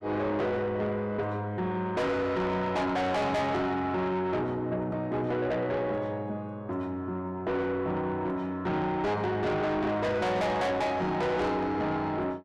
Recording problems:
distortion; soft clipping, signal-to-distortion ratio 7 dB

